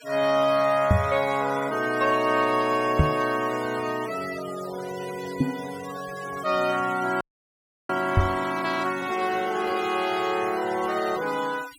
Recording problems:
noise reduction artefacts; signal-to-artefact ratio 16 dB
microphone thump; 4 times, first at 1 s; peak +9 dB vs average level
frozen audio; at 7 s for 0.5 s

